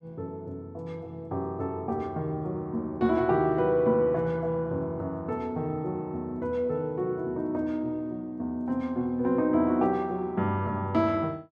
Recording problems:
none

